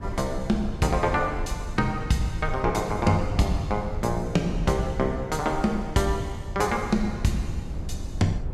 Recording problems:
rumble; below 96 Hz, SNR 9 dB

